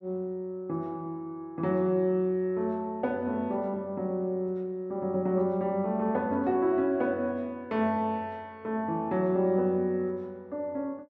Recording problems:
none

